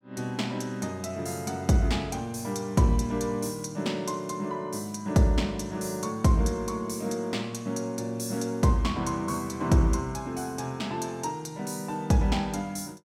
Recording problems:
none

